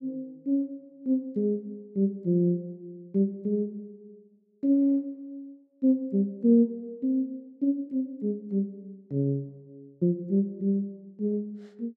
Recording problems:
none

